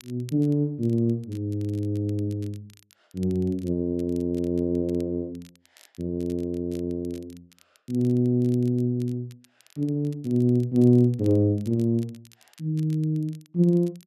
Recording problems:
crackling; vinyl, SNR 30 dB

